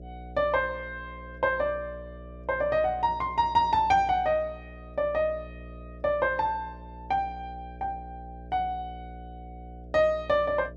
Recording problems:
hum; 60 Hz, harmonics up to 660 Hz, SNR 17 dB

